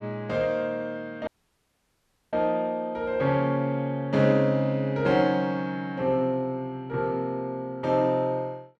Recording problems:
dropout; at 1.5 s for 1 s

